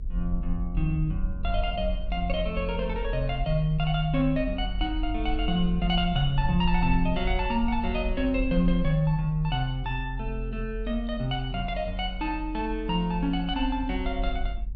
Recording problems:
rumble; below 44 Hz, strongest tone 42 Hz, SNR 6 dB

